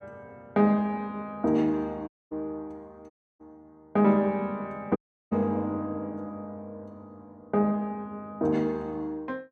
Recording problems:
audio cutting out; at 2 s, at 3 s and at 5 s

